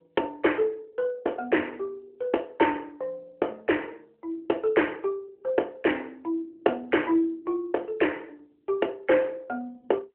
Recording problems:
telephone audio; 300 Hz to 3.1 kHz, AMR-NB

